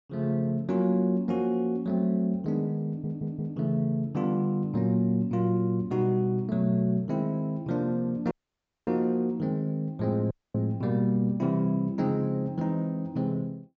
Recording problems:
low-pass filter; nothing above 8 kHz
stutter; at 3 s
dropout; at 8.5 s for 0.5 s and at 10 s

